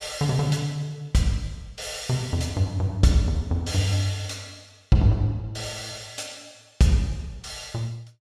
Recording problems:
none

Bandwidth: 14.5 kHz